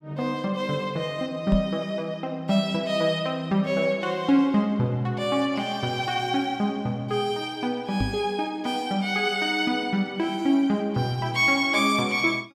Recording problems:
knock on the microphone; at 1.5 s and at 8 s; peak +2 dB vs average level

